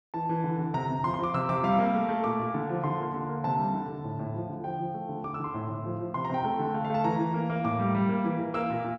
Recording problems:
none

